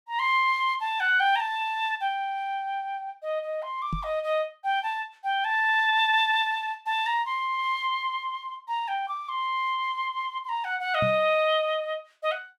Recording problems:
microphone thump; at 4 s and at 11 s; peak -2 dB vs average level

